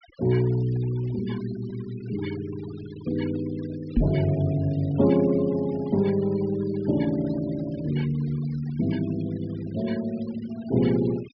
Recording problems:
low-pass filter; nothing above 5.5 kHz
denoising artefacts; signal-to-artefact ratio 20 dB
knock on the microphone; at 4 s; peak +7 dB vs average level

